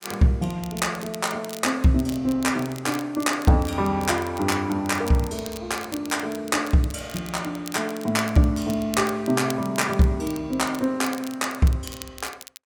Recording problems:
crackling; vinyl, SNR 17 dB

